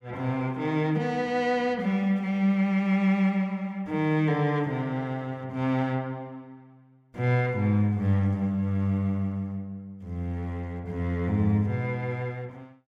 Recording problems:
none

